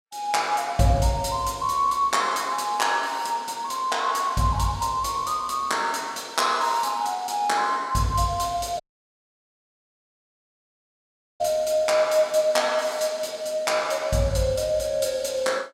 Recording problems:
audio cutting out; at 9 s for 2.5 s

